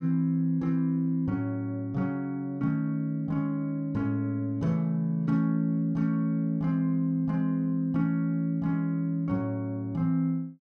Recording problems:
none

